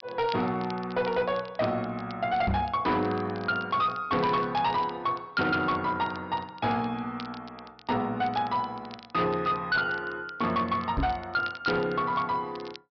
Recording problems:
low-pass filter; nothing above 5.5 kHz
distorted audio; hard clipping, signal-to-distortion ratio 11 dB
crackle; vinyl, SNR 21 dB
microphone bump; at 2.5 s and at 11 s; peak +3 dB vs average level

